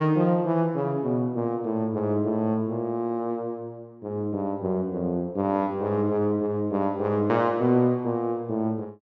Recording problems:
low-pass filter; nothing above 8 kHz

